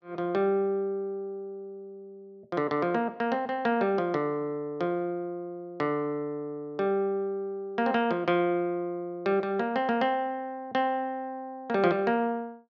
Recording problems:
none

